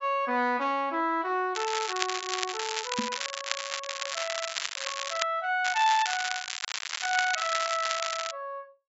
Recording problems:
treble cut off; nothing above 8 kHz
crackle; from 1.5 to 5 s and from 5.5 to 8.5 s; loose cable, SNR 3 dB
microphone bump; at 3 s; peak +2 dB vs average level

